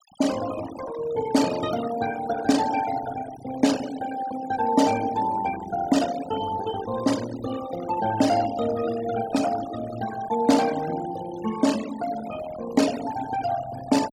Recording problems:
noise reduction artefacts; signal-to-artefact ratio 12 dB

